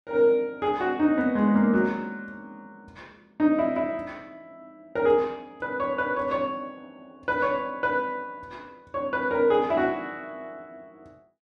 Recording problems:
none

